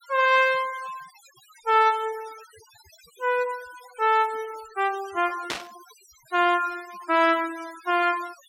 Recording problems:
noise reduction artefacts; signal-to-artefact ratio 21 dB
burst of static; at 5.5 s; peak -1 dB vs average level

